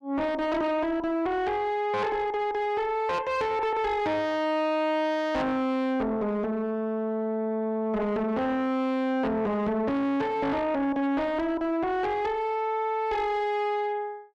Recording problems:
distorted audio; soft clipping, signal-to-distortion ratio 7 dB

